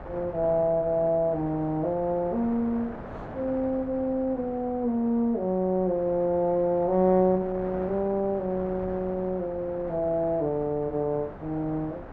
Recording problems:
wind noise; below 840 Hz, SNR 15 dB

